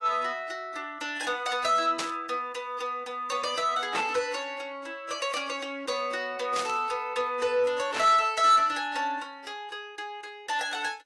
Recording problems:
lossy compression; AAC, log-spectral distance 2 dB
distorted audio; soft clipping, signal-to-distortion ratio 10 dB
static burst; 4 times, first at 2 s; peak 0 dB vs average level

